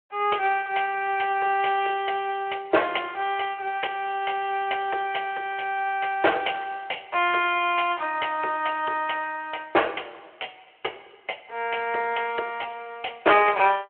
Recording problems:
phone line; 340 Hz to 3.2 kHz, Speex

